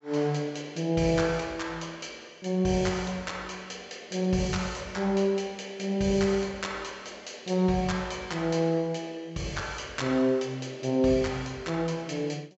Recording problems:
treble cut off; nothing above 7.6 kHz

